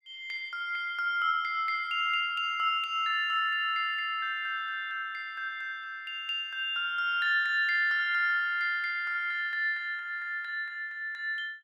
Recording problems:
none

